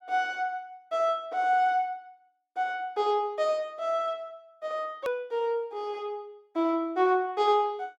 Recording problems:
click at an edit; at 5 s

